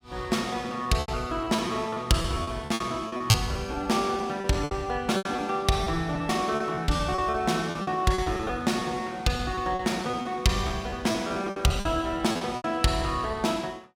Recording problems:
lost packets; 13% of the sound replaced, filled with repeated pitch periods

